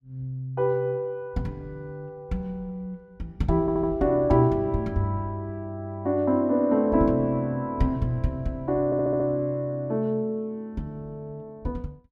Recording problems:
audio stuttering; at 3.5 s and at 9 s

